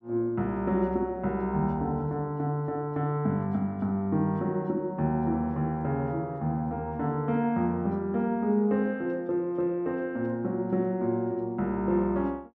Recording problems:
none

